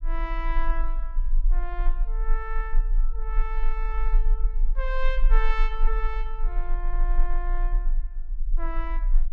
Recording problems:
low-frequency rumble; below 32 Hz, strongest tone 22 Hz, SNR -7 dB

